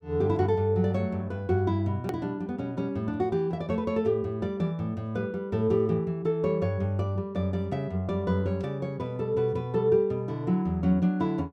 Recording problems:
hard cut with a click; at 2 s

